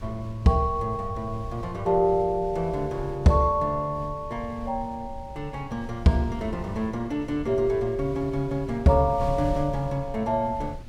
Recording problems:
wind on the microphone; below 100 Hz, SNR 14 dB

